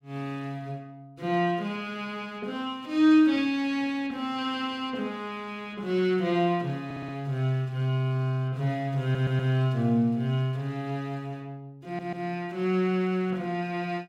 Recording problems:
stutter; at 7 s, at 9 s and at 12 s

